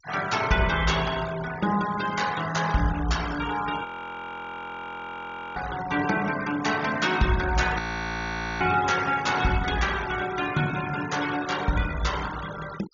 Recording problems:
low-pass filter; nothing above 7.1 kHz
noise reduction artefacts; signal-to-artefact ratio 13 dB
frozen audio; at 4 s for 1.5 s and at 8 s for 1 s

